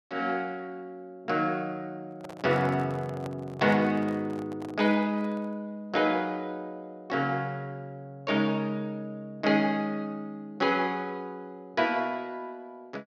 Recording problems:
handling noise; from 2 to 5.5 s; peak -7 dB vs average level

